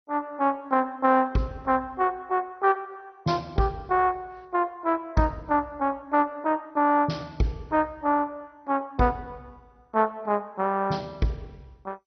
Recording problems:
codec artefacts; MP2, log-spectral distance 3 dB, nothing above 5.8 kHz

